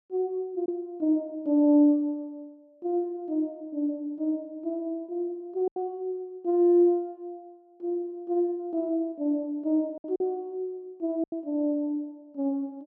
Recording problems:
lost packets; 2% of the sound replaced, filled with silence

